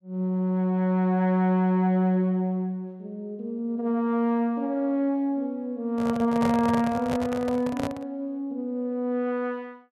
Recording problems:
microphone handling noise; from 6 to 8 s; peak -1 dB vs average level

